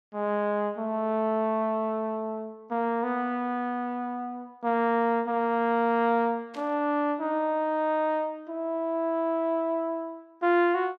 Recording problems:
static burst; at 6.5 s; peak -15 dB vs average level

